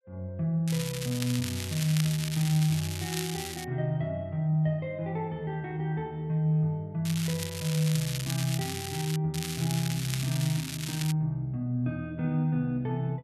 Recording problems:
crackling; from 0.5 to 3.5 s, from 7 to 9 s and from 9.5 to 11 s; loose cable, SNR 7 dB

